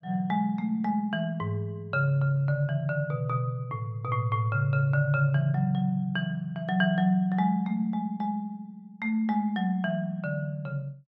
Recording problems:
none

